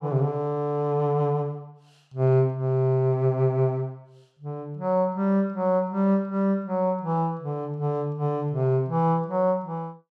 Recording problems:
none

